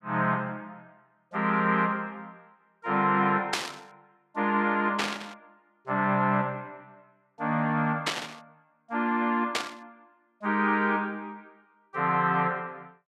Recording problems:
burst of static; 4 times, first at 3.5 s; peak +4 dB vs average level

